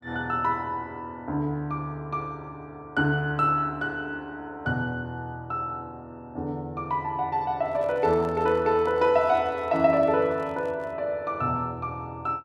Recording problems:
handling noise; from 7.5 to 11 s; peak -11 dB vs average level

